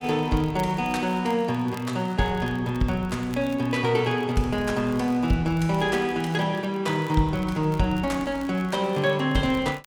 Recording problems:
crackle; vinyl, SNR 26 dB

